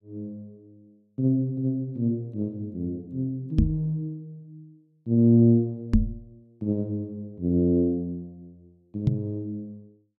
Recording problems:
microphone bump; at 3.5 s, at 6 s and at 9 s; peak +9 dB vs average level

